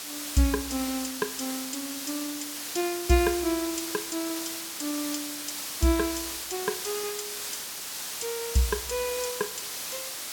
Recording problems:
background hiss; slope +1 dB per octave, SNR 3 dB

